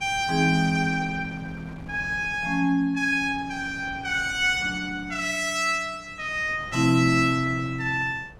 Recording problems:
wind noise; below 560 Hz, SNR 20 dB

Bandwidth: 16.5 kHz